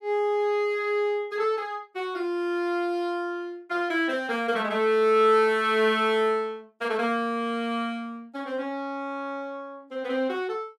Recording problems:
none

